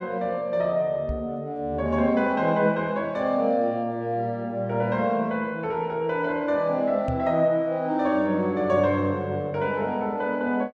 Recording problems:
microphone thump; at 1 s and at 7 s; peak -2 dB vs average level

